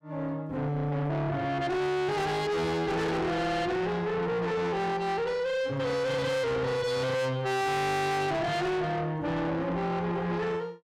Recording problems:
distorted audio; soft clipping, signal-to-distortion ratio 6 dB

